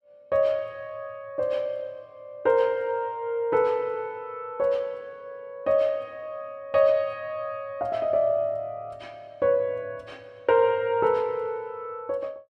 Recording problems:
none

